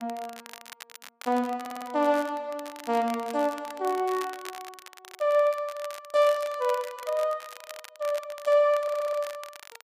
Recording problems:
crackle; vinyl, SNR 18 dB
audio stuttering; at 1.5 s and at 9 s

